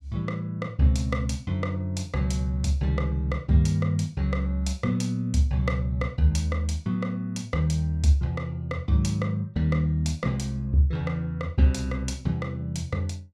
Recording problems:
none

